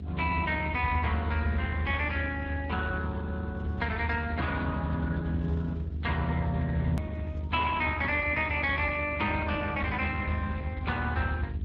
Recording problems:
lossy codec; Speex, log-spectral distance 3 dB
hum; 50 Hz, harmonics up to 550 Hz, SNR 14 dB
rumble; below 82 Hz, strongest tone 78 Hz, SNR 4 dB
edit click; at 7 s

